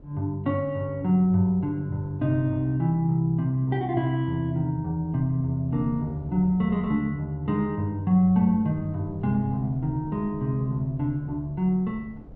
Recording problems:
wind on the microphone; below 230 Hz, SNR 22 dB

